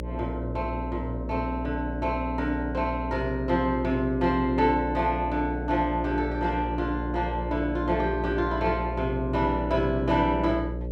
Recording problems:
hum; 60 Hz, harmonics up to 600 Hz, SNR 6 dB

